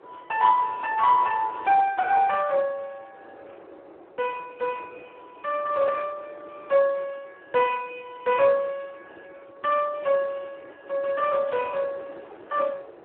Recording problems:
telephone audio; 240 Hz to 3 kHz, Speex
wind noise; below 770 Hz, SNR 23 dB

